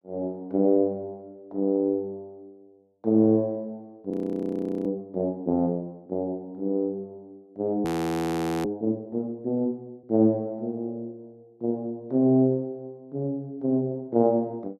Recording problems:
audio freezing; at 4 s for 1 s and at 8 s for 1 s

